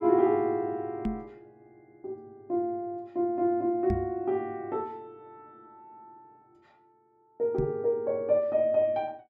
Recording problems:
microphone bump; at 1 s, at 4 s and at 7.5 s; peak +1 dB vs average level

